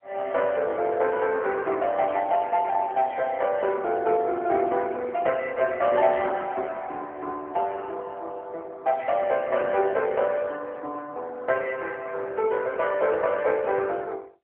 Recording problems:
phone line; 280 Hz to 3.2 kHz, AMR-NB

